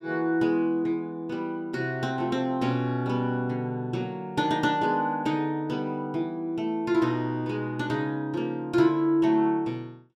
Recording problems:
none

